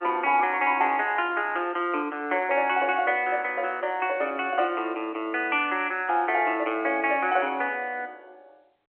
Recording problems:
phone line; 280 Hz to 3.3 kHz, G.711

